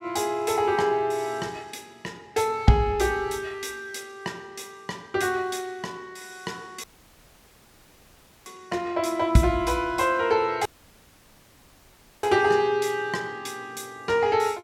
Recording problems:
dropout; at 7 s for 1.5 s and at 11 s for 1.5 s

